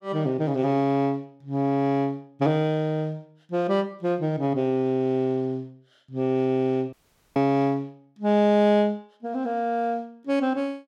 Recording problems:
audio cutting out; at 7 s

